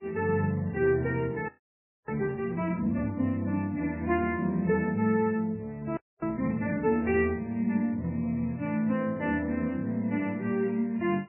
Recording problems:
lossy codec; MP3, log-spectral distance 2 dB, nothing above 2.7 kHz
audio freezing; at 1.5 s for 0.5 s and at 6 s

